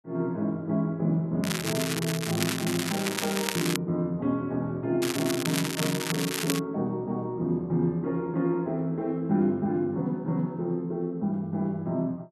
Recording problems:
crackling; from 1.5 to 4 s and from 5 to 6.5 s; loose cable, SNR 3 dB

